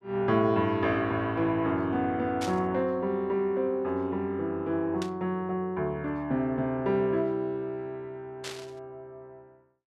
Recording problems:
static burst; at 2.5 s, at 5 s and at 8.5 s; peak -5 dB vs average level

